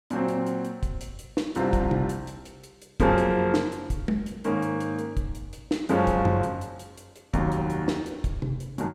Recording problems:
none

